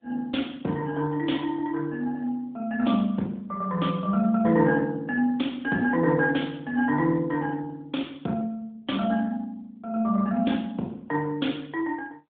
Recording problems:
telephone audio; 150 Hz to 3.6 kHz, AMR-NB

